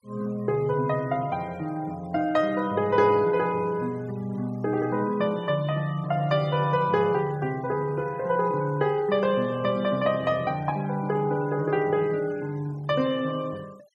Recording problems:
noise reduction artefacts; signal-to-artefact ratio 26 dB

